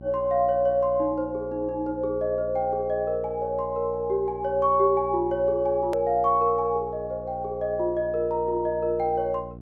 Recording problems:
hum; 60 Hz, harmonics up to 780 Hz, SNR 17 dB
edit click; at 6 s

